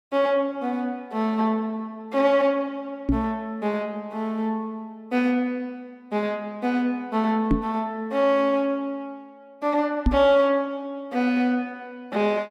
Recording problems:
knock on the microphone; at 3 s, at 7.5 s and at 10 s; peak +7 dB vs average level

